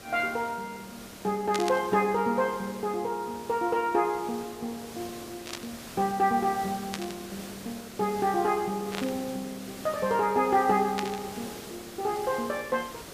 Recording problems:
hiss; SNR 14 dB
burst of static; 5 times, first at 1.5 s; peak 0 dB vs average level

